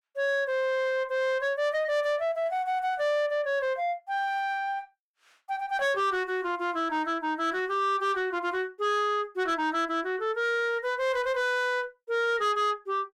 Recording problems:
distortion; soft clipping, signal-to-distortion ratio 12 dB

